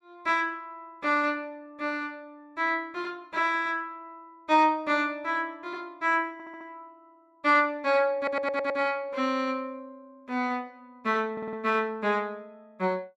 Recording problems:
audio stuttering; at 6.5 s, at 8 s and at 11 s

